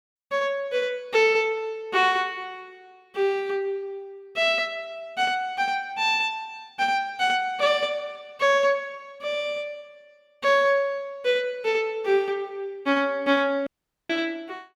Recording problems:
dropout; at 14 s

